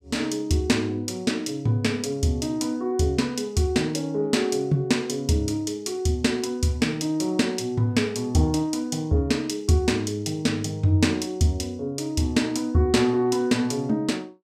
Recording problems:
none

